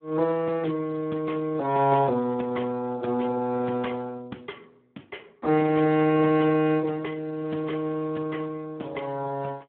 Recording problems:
telephone audio; 220 Hz to 3.4 kHz, Speex

